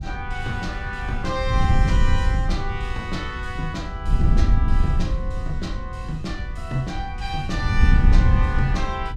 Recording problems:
wind noise; below 88 Hz, SNR -5 dB

